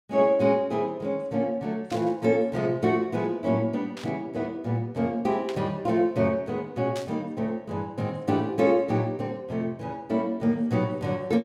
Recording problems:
burst of static; 4 times, first at 2 s; peak -8 dB vs average level

